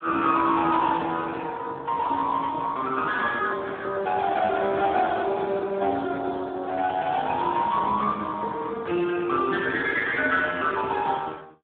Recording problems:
phone line; 220 Hz to 3.6 kHz, Speex

